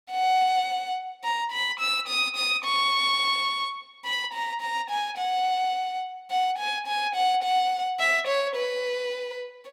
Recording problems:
none

